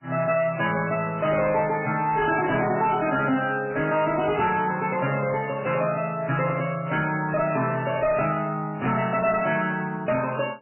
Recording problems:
codec artefacts; MP3, log-spectral distance 5 dB, nothing above 2.9 kHz
distorted audio; soft clipping, signal-to-distortion ratio 11 dB

